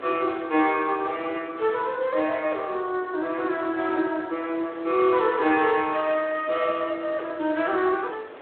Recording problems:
phone line; 190 Hz to 3.6 kHz, Speex
wind noise; below 1.3 kHz, SNR 20 dB

